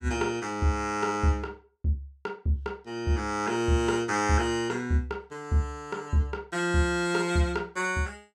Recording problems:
none

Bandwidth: 16 kHz